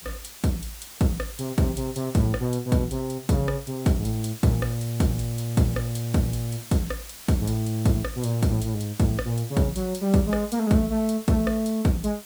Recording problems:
hiss; slope 0 dB per octave, SNR 15 dB

